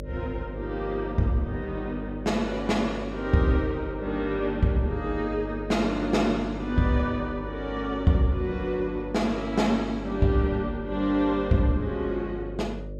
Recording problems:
hum; 50 Hz, harmonics up to 600 Hz, SNR 11 dB

